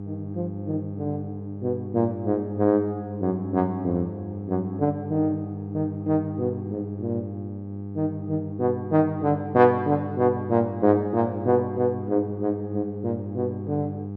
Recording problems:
electrical hum; 50 Hz, harmonics up to 800 Hz, SNR 9 dB

